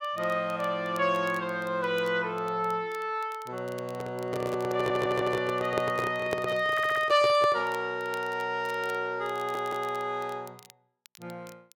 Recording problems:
crackling; vinyl, SNR 25 dB
handling noise; from 4 to 7.5 s; peak +1 dB vs average level
stutter; at 4.5 s, at 6.5 s and at 9.5 s

